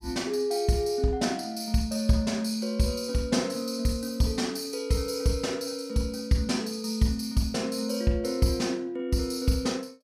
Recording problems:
none

